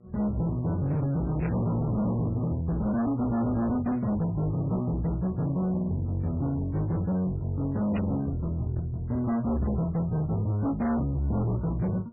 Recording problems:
lossy codec; MP3, log-spectral distance 2 dB, nothing above 11.3 kHz
distorted audio; hard clipping, uneven, signal-to-distortion ratio 6 dB
electrical hum; 60 Hz, harmonics up to 1.2 kHz, SNR 30 dB
static burst; at 1.5 s and at 8 s; peak -8 dB vs average level

